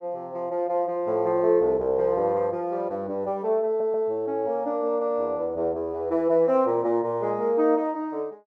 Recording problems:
stutter; at 3.5 s

